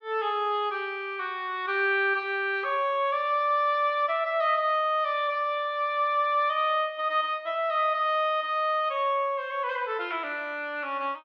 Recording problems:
none

